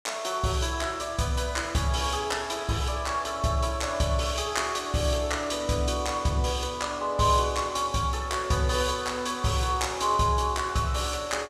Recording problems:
none

